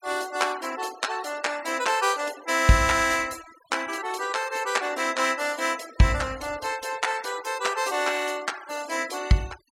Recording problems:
denoising artefacts; signal-to-artefact ratio 18 dB

